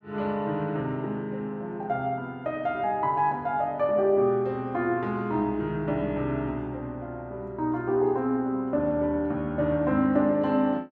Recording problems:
none

